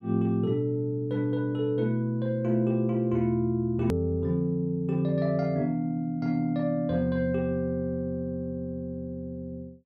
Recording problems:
click at an edit; at 4 s

